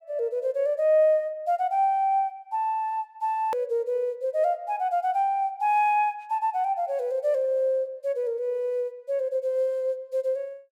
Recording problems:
click at an edit; at 3.5 s

